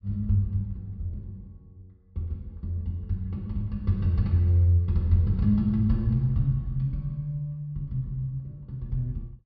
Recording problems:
treble cut off; nothing above 5.5 kHz

